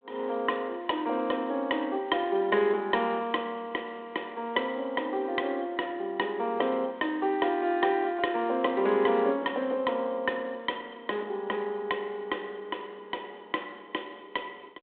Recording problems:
phone line; 220 Hz to 3.9 kHz, G.726

